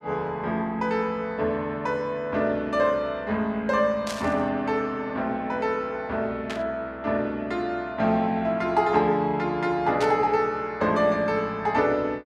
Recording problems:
static burst; at 4 s, at 6.5 s and at 10 s; peak -4 dB vs average level

